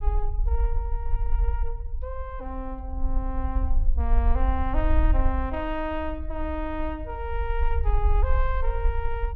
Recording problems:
low-frequency rumble; below 54 Hz, SNR -4 dB

